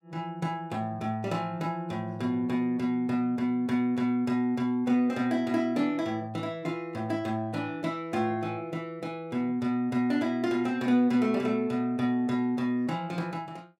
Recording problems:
none

